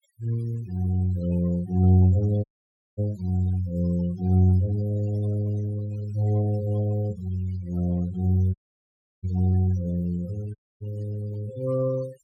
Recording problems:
noise reduction artefacts; signal-to-artefact ratio 20 dB
dropout; at 2.5 s for 0.5 s, at 8.5 s for 0.5 s and at 11 s

